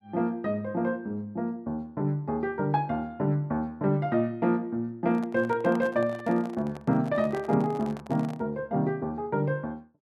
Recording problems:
microphone handling noise; from 5 to 8.5 s; peak -8 dB vs average level

